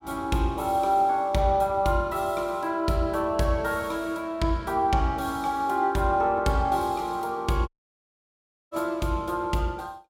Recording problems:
dropout; at 7.5 s for 1 s

